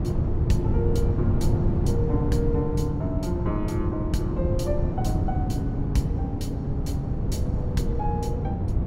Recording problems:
wind on the microphone; below 170 Hz, SNR -4 dB

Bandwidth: 16 kHz